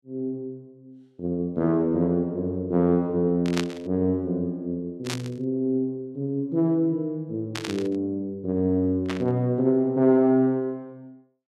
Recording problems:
static burst; 4 times, first at 3.5 s; peak -2 dB vs average level

